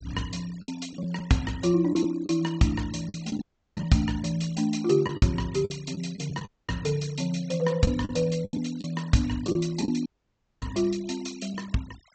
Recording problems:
treble cut off; nothing above 8 kHz
noise reduction artefacts; signal-to-artefact ratio 21 dB
lost packets; 7% of the sound replaced, filled with the last packet
dropout; at 3.5 s, at 6.5 s and at 10 s for 0.5 s

